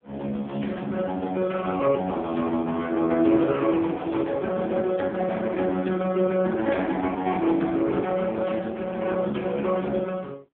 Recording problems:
phone line; 150 Hz to 3.4 kHz, AMR-NB

